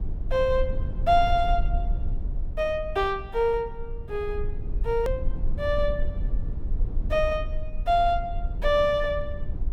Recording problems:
low-frequency rumble; below 52 Hz, strongest tone 22 Hz, SNR 6 dB
click at an edit; at 5 s

